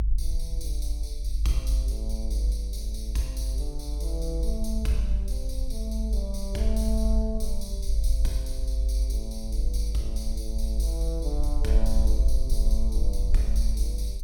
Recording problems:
rumble; below 52 Hz, strongest tone 50 Hz, SNR -7 dB

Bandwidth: 17.5 kHz